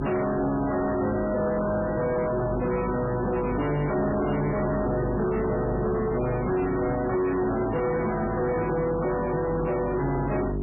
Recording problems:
lossy compression; MP3, log-spectral distance 4 dB
distortion; soft clipping, signal-to-distortion ratio 6 dB
electrical hum; 50 Hz, harmonics up to 750 Hz, SNR 5 dB

